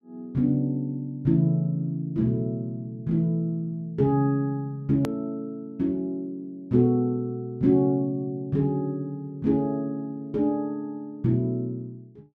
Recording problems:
hard cut with a click; at 5 s

